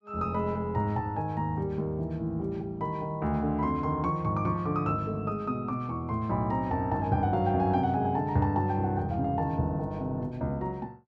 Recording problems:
none

